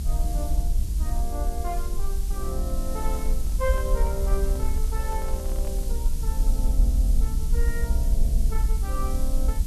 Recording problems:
background hiss; SNR 6 dB
low-frequency rumble; below 60 Hz, SNR -8 dB
handling noise; from 3 to 6 s; peak -6 dB vs average level

